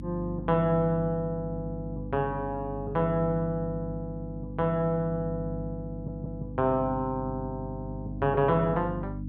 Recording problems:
hum; 50 Hz, harmonics up to 300 Hz, SNR 8 dB
audio stuttering; at 6 s

